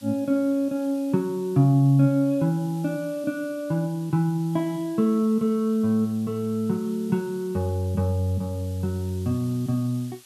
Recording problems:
hiss; slope +2 dB per octave, SNR 25 dB

